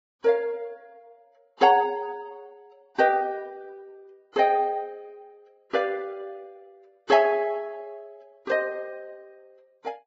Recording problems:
codec artefacts; Vorbis, log-spectral distance 2 dB, nothing above 7.3 kHz

